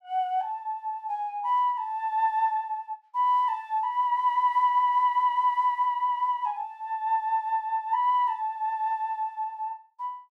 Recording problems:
none

